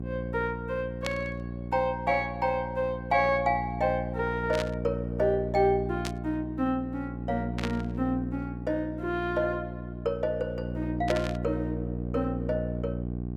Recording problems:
hum; 60 Hz, harmonics up to 780 Hz, SNR 5 dB
static burst; 5 times, first at 1 s; peak +1 dB vs average level

